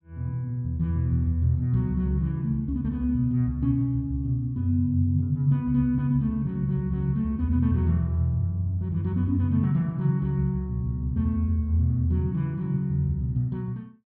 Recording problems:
none

